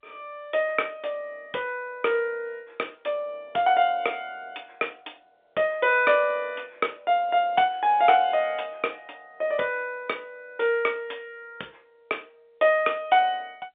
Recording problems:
phone line; 280 Hz to 3.6 kHz, G.711

